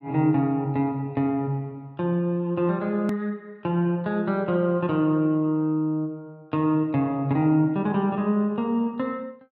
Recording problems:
click at an edit; at 3 s

